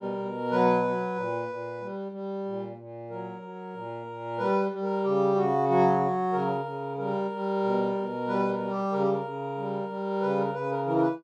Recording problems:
none

